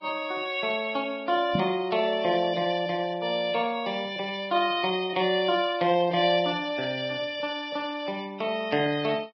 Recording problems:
treble missing; nothing above 4.8 kHz
lossy codec; Vorbis, log-spectral distance 3 dB
knock on the microphone; at 1.5 s; peak +2 dB vs average level

